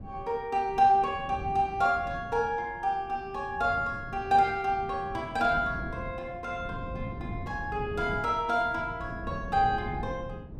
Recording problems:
wind noise; below 230 Hz, SNR 13 dB

